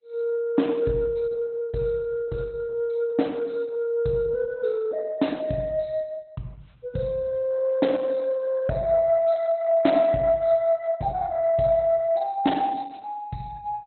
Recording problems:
lossy codec; Opus, log-spectral distance 2 dB, nothing above 4.1 kHz

